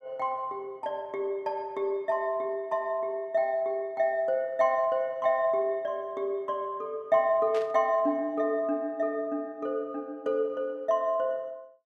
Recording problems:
burst of static; at 7.5 s; peak -10 dB vs average level

